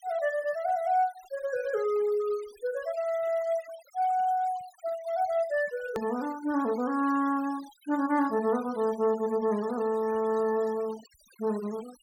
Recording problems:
noise reduction artefacts; signal-to-artefact ratio 21 dB
edit click; at 6 s

